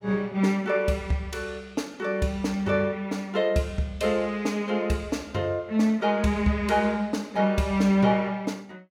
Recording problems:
none

